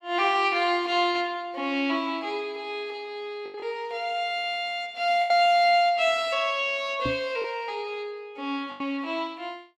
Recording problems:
lost packets; 3% of the sound replaced, filled with the last packet
knock on the microphone; at 7 s; peak -2 dB vs average level

